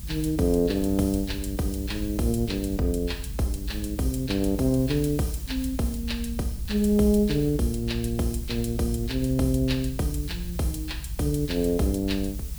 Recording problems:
hiss; slope +1 dB per octave, SNR 17 dB
low-frequency rumble; below 64 Hz, strongest tone 48 Hz, SNR 9 dB

